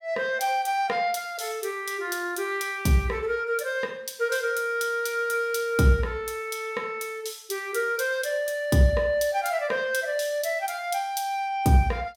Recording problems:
none

